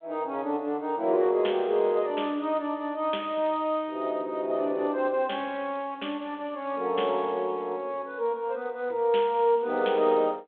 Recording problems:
phone line; 260 Hz to 3.4 kHz, G.726

